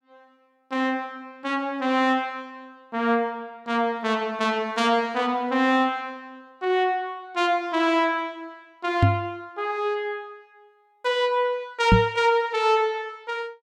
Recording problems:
microphone thump; at 9 s and at 12 s; peak +9 dB vs average level

